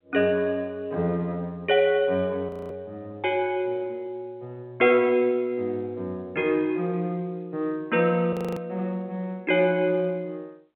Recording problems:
phone line; 190 Hz to 3.2 kHz, G.711
audio freezing; at 2.5 s and at 8.5 s

